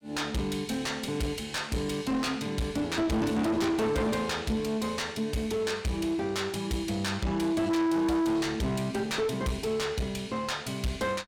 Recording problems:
distortion; soft clipping, signal-to-distortion ratio 6 dB

